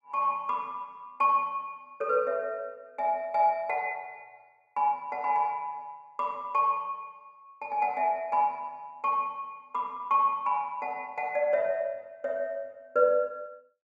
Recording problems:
none

